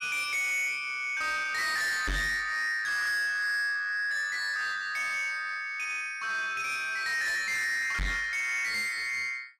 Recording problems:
distorted audio; soft clipping, signal-to-distortion ratio 7 dB
knock on the microphone; at 2 s and at 8 s; peak +2 dB vs average level

